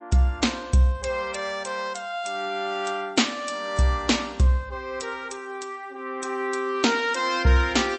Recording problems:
lossy compression; MP3, log-spectral distance 3 dB, nothing above 8.2 kHz

